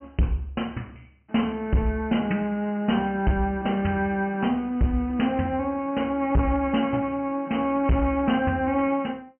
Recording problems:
treble cut off; nothing above 3 kHz
distorted audio; hard clipping, signal-to-distortion ratio 10 dB

